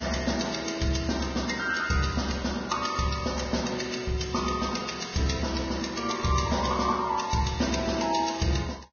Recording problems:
lossy codec; Vorbis, log-spectral distance 7 dB, nothing above 6.5 kHz

